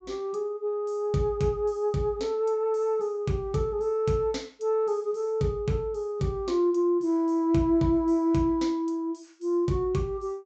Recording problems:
treble cut off; nothing above 8 kHz

